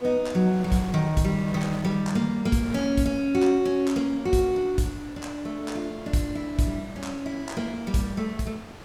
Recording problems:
wind on the microphone; below 1.6 kHz, SNR 17 dB

